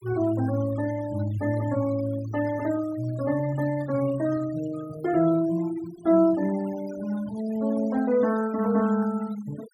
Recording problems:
denoising artefacts; signal-to-artefact ratio 19 dB

